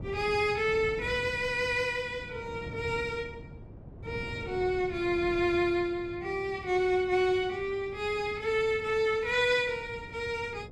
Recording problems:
wind on the microphone; below 280 Hz, SNR 16 dB

